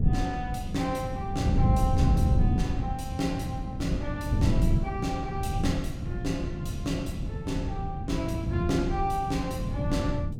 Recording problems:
wind noise; below 160 Hz, SNR -2 dB

